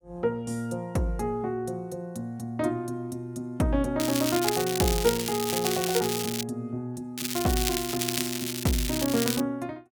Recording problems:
crackle; from 4 to 6.5 s and from 7 to 9.5 s; loose cable, SNR 2 dB

